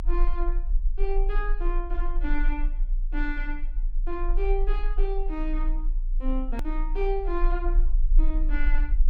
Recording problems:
low-frequency rumble; below 32 Hz, strongest tone 30 Hz, SNR -5 dB
hard cut with a click; at 6.5 s

